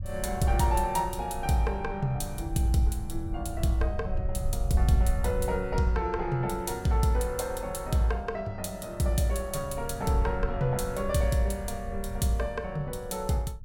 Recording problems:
rumble; below 80 Hz, SNR 8 dB

